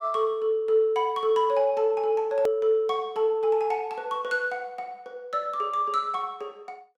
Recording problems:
click at an edit; at 2.5 s

